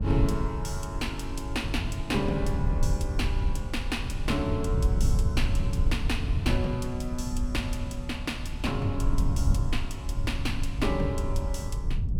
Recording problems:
low-frequency rumble; below 92 Hz, SNR -1 dB

